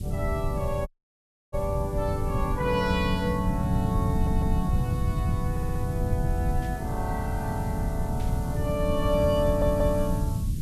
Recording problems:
hiss; SNR 19 dB
rumble; below 140 Hz, SNR 0 dB
dropout; at 1 s for 0.5 s
stutter; at 4 s, at 5.5 s and at 9.5 s
burst of static; at 6.5 s and at 8 s; peak -14 dB vs average level

